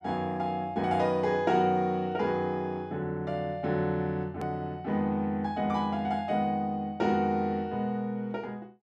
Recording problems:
edit click; at 4.5 s

